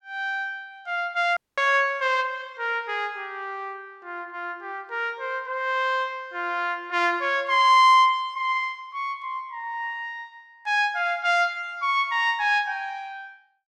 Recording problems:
dropout; at 1.5 s

